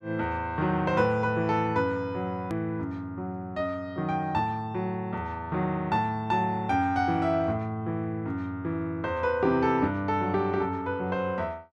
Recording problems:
click at an edit; at 2.5 s

